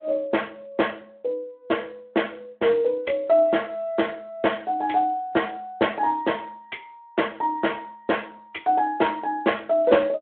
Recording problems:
telephone audio; 260 Hz to 3.3 kHz, Speex

